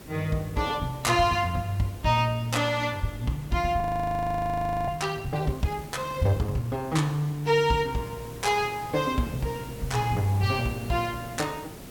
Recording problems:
hiss; slope -5 dB per octave, SNR 16 dB
frozen audio; at 4 s for 1 s

